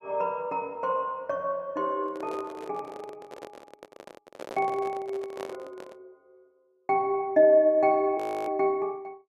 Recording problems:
microphone handling noise; from 2 to 6 s; peak -8 dB vs average level
frozen audio; at 8 s

